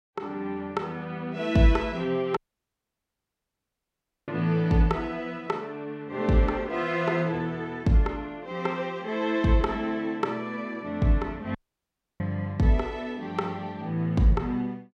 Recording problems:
audio cutting out; at 2.5 s for 2 s and at 12 s for 0.5 s

